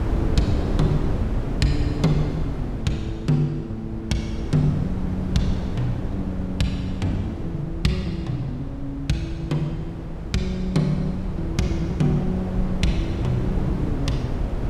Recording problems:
wind noise; below 210 Hz, SNR 3 dB

